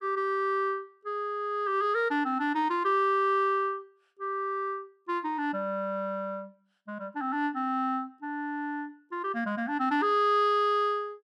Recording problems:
none

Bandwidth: 14.5 kHz